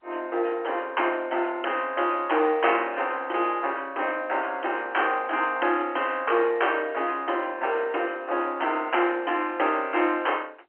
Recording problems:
phone line; 280 Hz to 3.2 kHz, G.711

